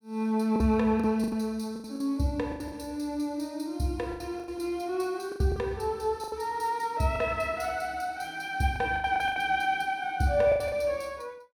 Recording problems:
lost packets; 10% of the sound replaced, filled with the last packet

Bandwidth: 17.5 kHz